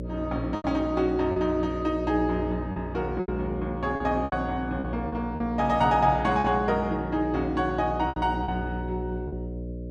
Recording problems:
hum; 60 Hz, harmonics up to 600 Hz, SNR 8 dB
lost packets; 7% of the sound replaced, filled with repeated pitch periods

